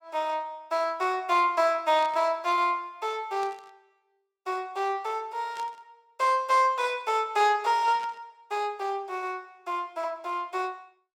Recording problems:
burst of static; 4 times, first at 2 s; peak -13 dB vs average level

